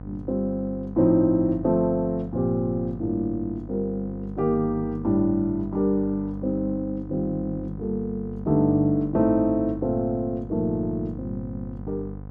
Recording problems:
hum; 50 Hz, harmonics up to 1 kHz, SNR 13 dB

